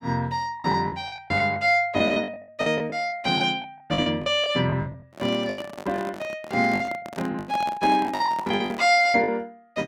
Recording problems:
lost packets; 15% of the sound replaced, filled with the last packet
microphone handling noise; from 5 to 9 s; peak -6 dB vs average level

